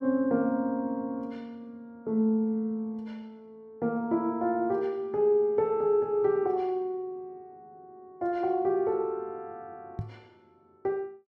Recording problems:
knock on the microphone; at 10 s; peak -2 dB vs average level

